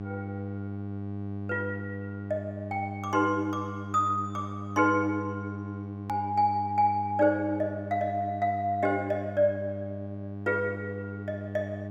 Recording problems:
hum; 50 Hz, harmonics up to 1.1 kHz, SNR 8 dB
click at an edit; at 6 s

